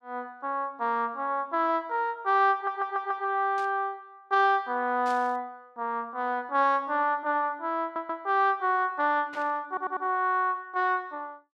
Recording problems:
stutter; at 2.5 s, at 8 s and at 9.5 s
static burst; at 3.5 s, at 5 s and at 9.5 s; peak -13 dB vs average level

